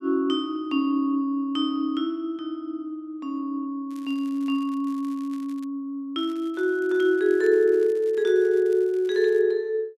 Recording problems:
crackling; from 4 to 5.5 s and from 6 to 9.5 s; loose cable, SNR 29 dB

